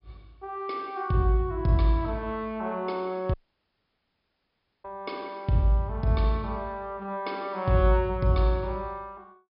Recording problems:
low-pass filter; nothing above 5.5 kHz
dropout; at 3.5 s for 1.5 s

